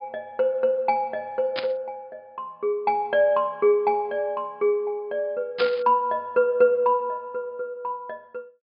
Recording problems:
treble cut off; nothing above 5.1 kHz
static burst; at 1.5 s and at 5.5 s; peak -1 dB vs average level

